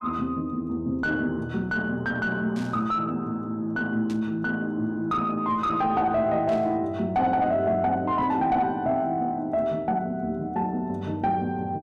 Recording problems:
distorted audio; soft clipping, signal-to-distortion ratio 11 dB
static burst; at 2.5 s, at 4 s and at 6.5 s; peak -13 dB vs average level

